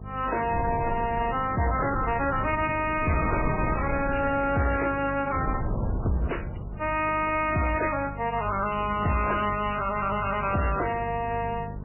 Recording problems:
lossy compression; MP3, then MP3, log-spectral distance 7 dB, nothing above 2.5 kHz
distorted audio; hard clipping, signal-to-distortion ratio 11 dB
electrical hum; 50 Hz, harmonics up to 700 Hz, SNR 13 dB
wind on the microphone; below 310 Hz, SNR 7 dB
crackling; from 3 to 4.5 s; loose cable, SNR 12 dB

